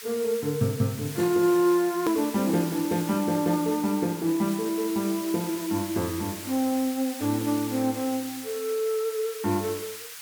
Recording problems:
background hiss; SNR 11 dB
click at an edit; at 2 s

